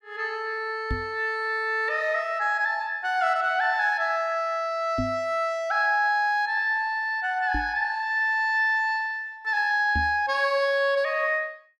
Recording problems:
microphone bump; 4 times, first at 1 s; peak -1 dB vs average level

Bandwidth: 14.5 kHz